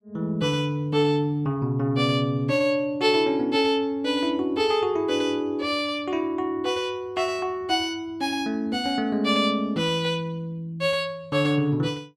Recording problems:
none

